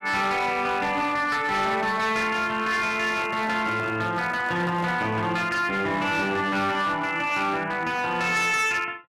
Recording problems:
distorted audio; hard clipping, signal-to-distortion ratio 11 dB
microphone handling noise; from 3 to 5 s; peak -10 dB vs average level

